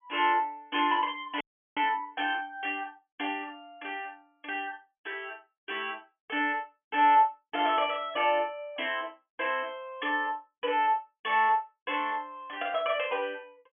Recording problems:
treble cut off; nothing above 3.4 kHz
frozen audio; at 1.5 s

